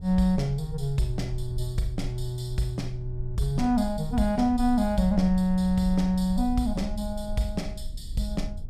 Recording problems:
low-frequency rumble; below 58 Hz, strongest tone 22 Hz, SNR 11 dB

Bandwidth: 14.5 kHz